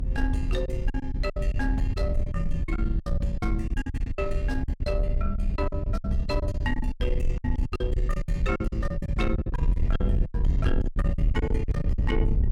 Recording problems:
distorted audio; soft clipping, signal-to-distortion ratio 11 dB
rumble; below 76 Hz, SNR -3 dB
lost packets; 17% of the sound replaced, filled with silence

